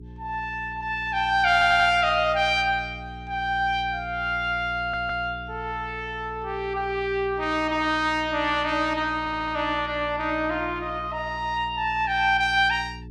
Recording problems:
hum; 60 Hz, harmonics up to 420 Hz, SNR 17 dB
stutter; at 1.5 s, at 5 s and at 9 s

